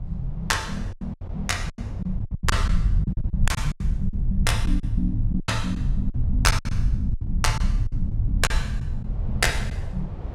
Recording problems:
low-frequency rumble; below 82 Hz, SNR 0 dB
wind noise; below 720 Hz, SNR 20 dB
lost packets; 12% of the sound replaced, filled with silence

